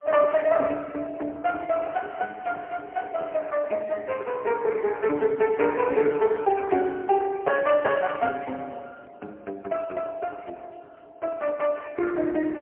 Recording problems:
telephone audio; 260 Hz to 2.8 kHz, AMR-NB, then MP3

